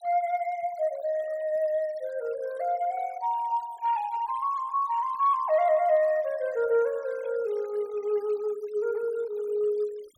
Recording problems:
denoising artefacts; signal-to-artefact ratio 26 dB

